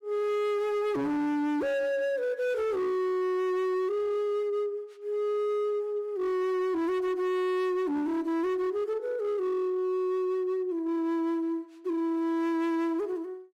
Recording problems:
distortion; hard clipping, signal-to-distortion ratio 10 dB

